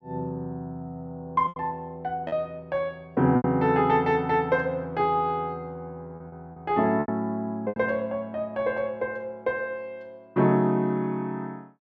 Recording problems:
lost packets; 4% of the sound replaced, filled with repeated pitch periods

